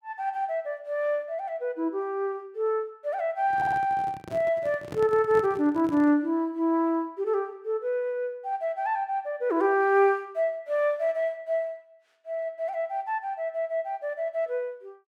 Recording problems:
handling noise; from 3.5 to 6 s; peak -7 dB vs average level
audio stuttering; at 3.5 s

